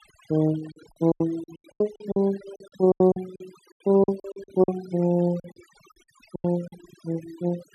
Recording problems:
noise reduction artefacts; signal-to-artefact ratio 21 dB
packet loss; 18% of the sound replaced, filled with silence

